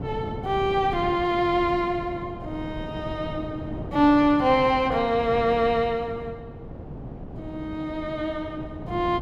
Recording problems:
wind noise; below 350 Hz, SNR 12 dB

